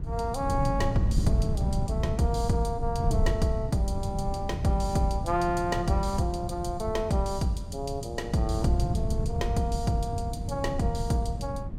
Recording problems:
wind on the microphone; below 130 Hz, SNR 2 dB

